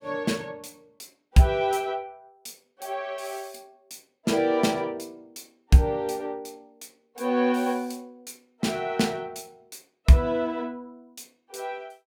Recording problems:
none

